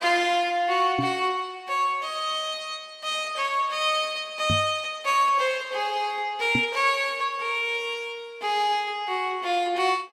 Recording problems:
microphone thump; at 1 s, at 4.5 s and at 6.5 s; peak +1 dB vs average level

